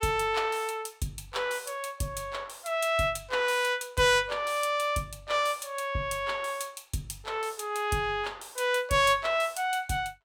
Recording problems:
none

